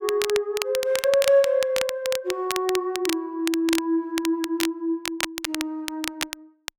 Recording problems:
crackle; vinyl, SNR 7 dB

